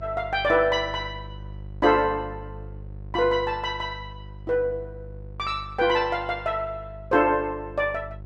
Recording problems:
electrical hum; 50 Hz, harmonics up to 550 Hz, SNR 16 dB

